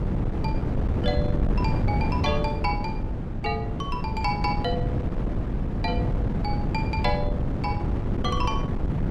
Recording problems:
wind on the microphone; below 220 Hz, SNR -4 dB

